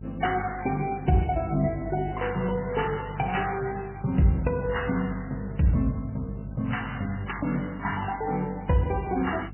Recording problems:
codec artefacts; MP3, log-spectral distance 7 dB, nothing above 3 kHz
hum; 50 Hz, harmonics up to 450 Hz, SNR 12 dB

